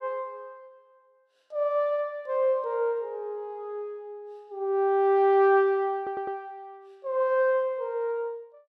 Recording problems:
audio stuttering; at 6 s

